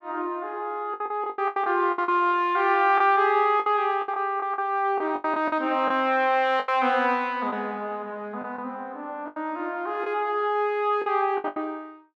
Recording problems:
lost packets; 10% of the sound replaced, filled with the last packet

